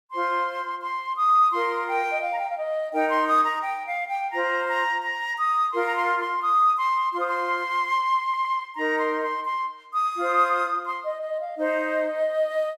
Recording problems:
audio stuttering; at 8 s

